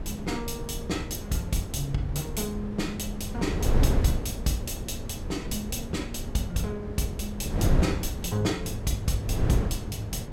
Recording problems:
wind noise; below 170 Hz, SNR 1 dB

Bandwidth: 16 kHz